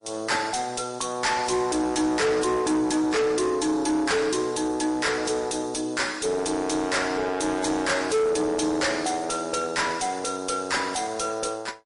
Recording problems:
lossy compression; MP3, log-spectral distance 5 dB, nothing above 10.1 kHz
distorted audio; soft clipping, signal-to-distortion ratio 6 dB

